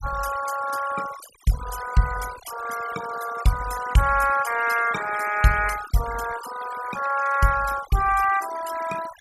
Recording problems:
denoising artefacts; signal-to-artefact ratio 12 dB

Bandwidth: 15 kHz